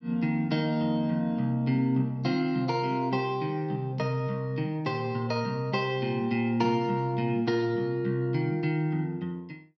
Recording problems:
none

